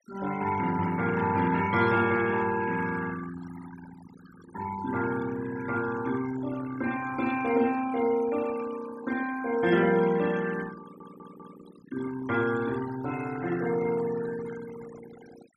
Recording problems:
denoising artefacts; signal-to-artefact ratio 15 dB
stutter; at 11 s

